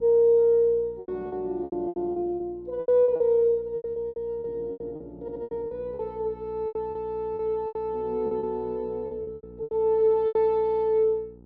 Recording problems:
mains hum; 60 Hz, harmonics up to 900 Hz, SNR 23 dB
lost packets; 15% of the sound replaced, filled with repeated pitch periods
stutter; at 5 s and at 11 s

